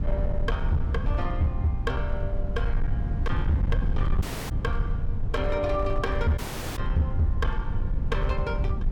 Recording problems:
distorted audio; hard clipping, signal-to-distortion ratio 12 dB
rumble; below 86 Hz, SNR 0 dB
audio cutting out; at 4 s and at 6.5 s

